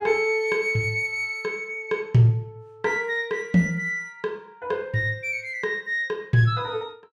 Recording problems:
none

